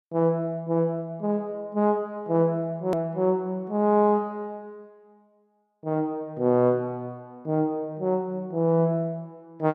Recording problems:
click at an edit; at 3 s

